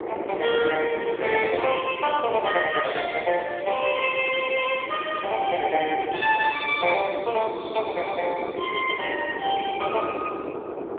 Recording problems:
telephone audio; 320 Hz to 3.5 kHz, AMR-NB
wind on the microphone; below 640 Hz, SNR 9 dB

